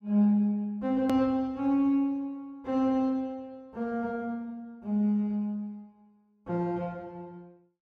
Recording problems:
edit click; at 1 s

